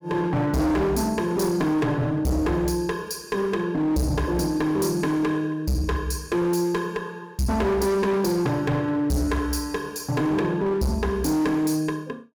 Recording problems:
distortion; hard clipping, uneven, signal-to-distortion ratio 7 dB

